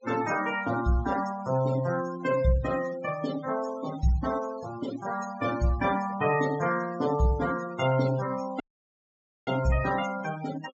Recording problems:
treble cut off; nothing above 8 kHz
denoising artefacts; signal-to-artefact ratio 13 dB
dropout; at 8.5 s for 1 s

